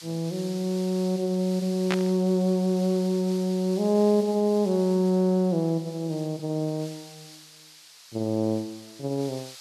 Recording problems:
hiss; slope +4 dB per octave, SNR 19 dB
burst of static; at 2 s; peak +1 dB vs average level

